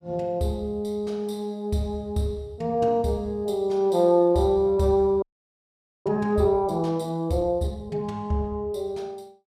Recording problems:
audio freezing; at 5 s for 1 s

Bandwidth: 15 kHz